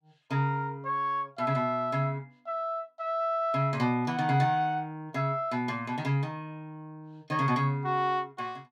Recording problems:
none

